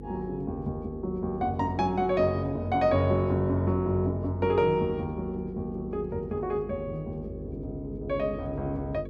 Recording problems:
hum; 50 Hz, harmonics up to 500 Hz, SNR 13 dB

